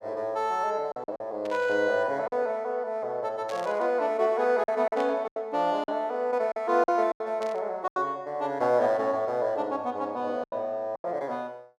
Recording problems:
packet loss; 7% of the sound replaced, filled with silence
static burst; 4 times, first at 1.5 s; peak -10 dB vs average level

